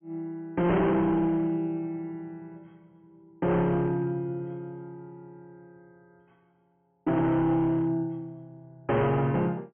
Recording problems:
treble cut off; nothing above 3.2 kHz
distortion; hard clipping, signal-to-distortion ratio 8 dB

